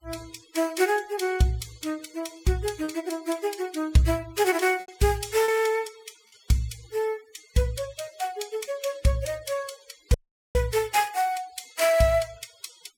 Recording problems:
denoising artefacts; signal-to-artefact ratio 22 dB
lost packets; 1.9% of the sound replaced, filled with repeated pitch periods
dropout; at 10 s

